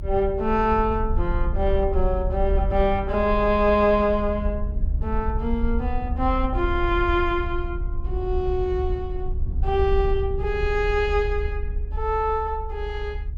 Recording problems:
rumble; below 68 Hz, SNR 5 dB

